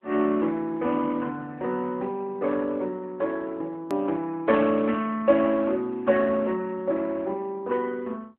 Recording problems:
telephone audio; 190 Hz to 3.4 kHz, AMR-NB
edit click; at 4 s

